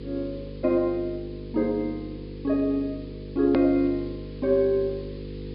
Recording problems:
treble cut off; nothing above 5.1 kHz
mains hum; 50 Hz, harmonics up to 500 Hz, SNR 12 dB
hiss; SNR 28 dB
edit click; at 3.5 s

